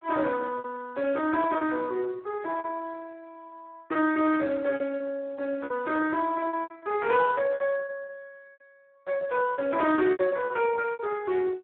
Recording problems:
phone line; 280 Hz to 3.1 kHz, Speex
packet loss; 15% of the sound replaced, filled with repeated pitch periods

